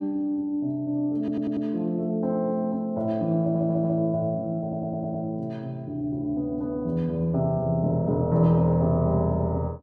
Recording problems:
audio stuttering; at 1 s, at 3.5 s and at 4.5 s

